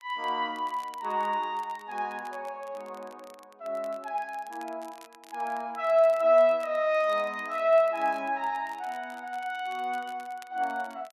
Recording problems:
crackle; vinyl, SNR 27 dB

